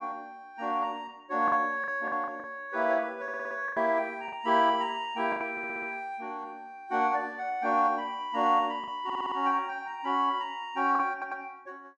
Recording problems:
lost packets; 4% of the sound replaced, filled with the last packet
stutter; 4 times, first at 3 s

